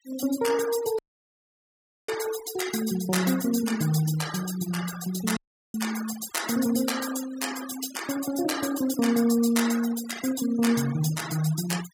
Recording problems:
noise reduction artefacts; signal-to-artefact ratio 12 dB
audio cutting out; at 1 s for 1 s and at 5.5 s

